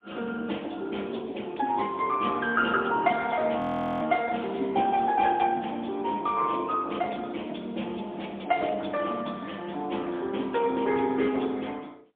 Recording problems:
phone line; 220 Hz to 3.5 kHz, AMR-NB, then MP3
frozen audio; at 3.5 s

